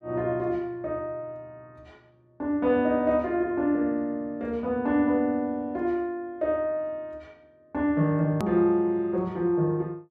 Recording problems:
edit click; at 8.5 s

